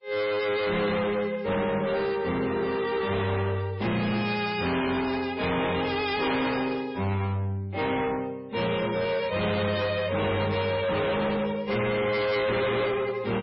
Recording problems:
codec artefacts; MP3, log-spectral distance 4 dB, nothing above 5.2 kHz
distortion; hard clipping, signal-to-distortion ratio 7 dB

